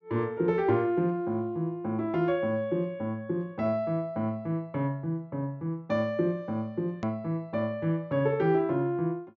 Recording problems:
low-pass filter; nothing above 7.5 kHz
click at an edit; at 7 s

